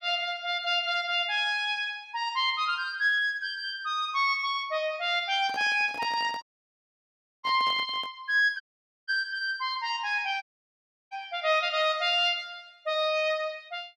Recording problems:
microphone handling noise; from 5.5 to 8 s; peak -8 dB vs average level
dropout; at 6.5 s for 1 s, at 8.5 s and at 10 s for 0.5 s

